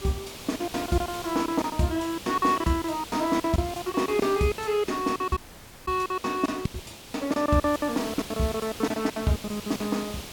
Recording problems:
background hiss; SNR 12 dB
lost packets; 20% of the sound replaced, filled with silence
dropout; at 5.5 s for 0.5 s

